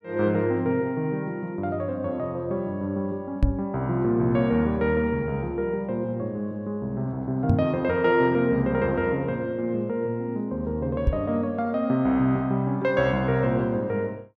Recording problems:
microphone thump; at 3.5 s, at 7.5 s and at 11 s; peak +7 dB vs average level

